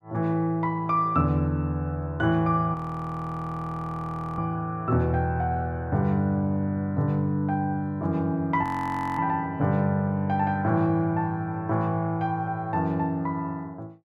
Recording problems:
frozen audio; at 2.5 s for 1.5 s and at 8.5 s for 0.5 s

